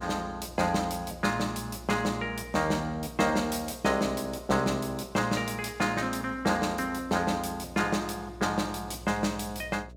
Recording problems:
hum; 60 Hz, harmonics up to 660 Hz, SNR 19 dB

